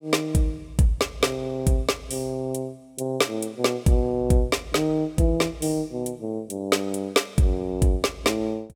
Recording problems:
none

